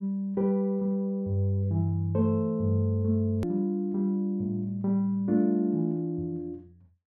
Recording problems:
click at an edit; at 3.5 s

